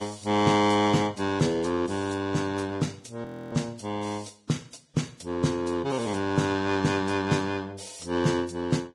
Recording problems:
codec artefacts; Vorbis, log-spectral distance 4 dB, nothing above 10.4 kHz
frozen audio; at 3 s

